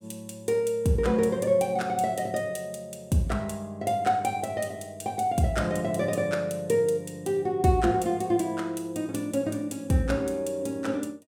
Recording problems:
none

